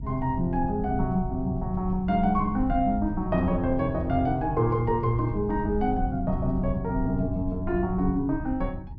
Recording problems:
rumble; below 110 Hz, SNR 8 dB

